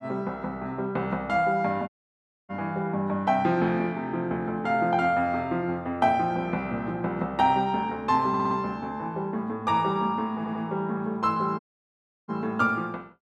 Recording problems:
audio cutting out; at 2 s for 0.5 s and at 12 s for 0.5 s
audio stuttering; at 8.5 s and at 10 s

